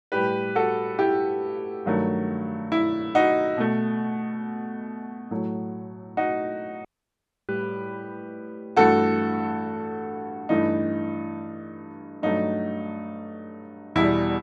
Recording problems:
audio cutting out; at 7 s for 0.5 s

